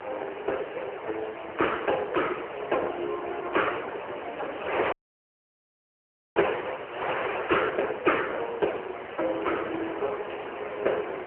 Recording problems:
phone line; 320 Hz to 3 kHz, AMR-NB
wind noise; below 1.7 kHz, SNR 6 dB
dropout; at 5 s for 1.5 s

